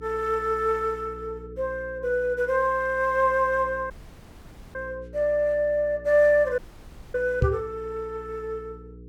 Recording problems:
electrical hum; 60 Hz, harmonics up to 480 Hz, SNR 20 dB
audio cutting out; at 4 s for 1 s and at 6.5 s for 0.5 s
microphone bump; at 7.5 s; peak +6 dB vs average level

